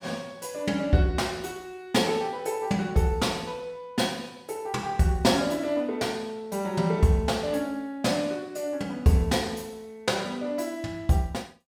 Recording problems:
none

